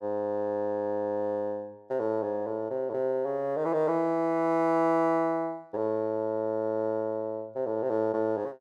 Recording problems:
none

